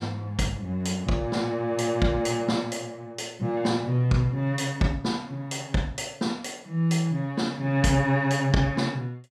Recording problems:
none

